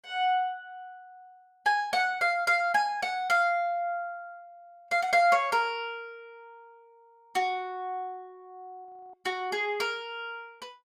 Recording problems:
audio freezing; at 9 s

